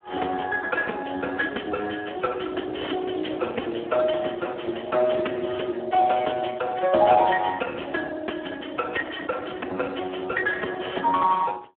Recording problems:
telephone audio; 220 Hz to 2.2 kHz, Speex

